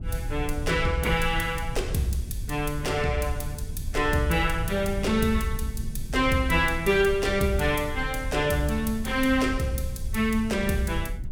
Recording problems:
rumble; below 88 Hz, SNR 9 dB

